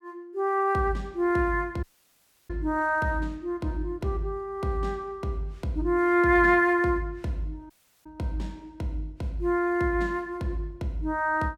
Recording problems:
dropout; at 2 s for 0.5 s and at 7.5 s

